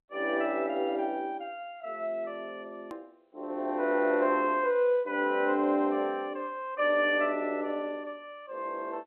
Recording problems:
telephone audio; 240 Hz to 3.3 kHz, G.711
click at an edit; at 3 s

